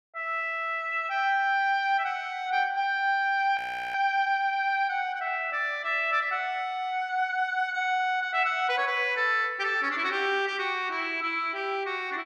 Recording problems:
frozen audio; at 3.5 s

